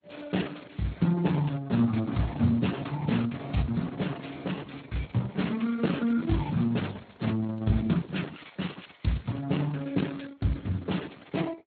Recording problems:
lossy compression; Opus, then Speex, log-spectral distance 6 dB, nothing above 4.2 kHz
crackling; from 5 to 9.5 s; loose cable, SNR 26 dB

